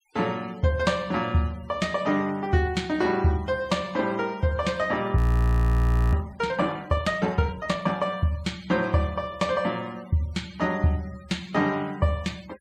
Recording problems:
denoising artefacts; signal-to-artefact ratio 24 dB
audio freezing; at 5 s for 1 s

